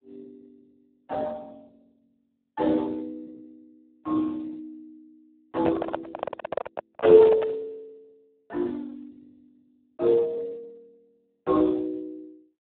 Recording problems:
phone line; 280 Hz to 2.8 kHz, Speex
handling noise; from 5.5 to 7.5 s; peak +1 dB vs average level

